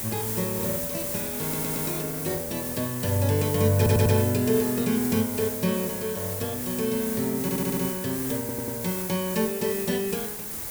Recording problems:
hiss; SNR 4 dB
stutter; 4 times, first at 1.5 s

